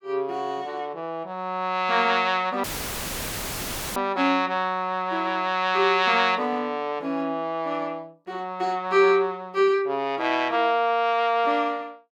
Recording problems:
audio cutting out; at 2.5 s for 1.5 s; filled with static

